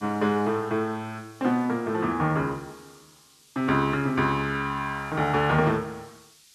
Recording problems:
hiss; SNR 27 dB

